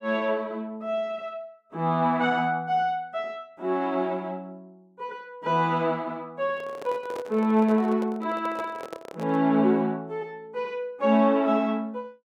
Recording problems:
handling noise; from 6.5 to 9.5 s; peak -7 dB vs average level

